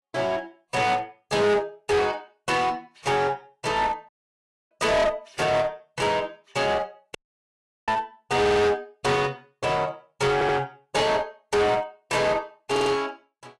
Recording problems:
lossy compression; AAC, log-spectral distance 2 dB, nothing above 11.3 kHz
distorted audio; hard clipping, uneven, signal-to-distortion ratio 6 dB
audio cutting out; at 4 s for 0.5 s and at 7 s for 0.5 s
stutter; at 8.5 s, at 10 s and at 13 s

